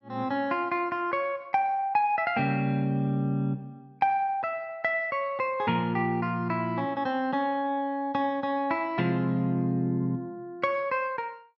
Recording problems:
none

